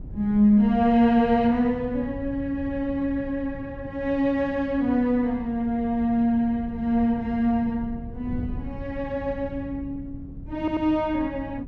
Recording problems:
wind on the microphone; below 160 Hz, SNR 15 dB
audio stuttering; at 11 s

